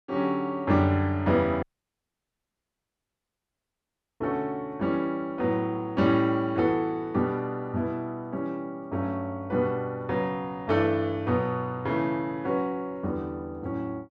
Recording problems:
audio cutting out; at 1.5 s for 2.5 s

